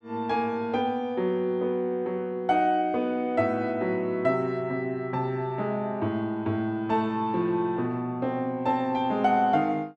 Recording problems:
none

